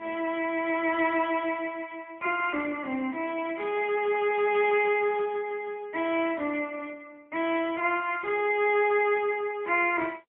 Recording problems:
phone line; 220 Hz to 3.3 kHz, AMR-NB, then MP3

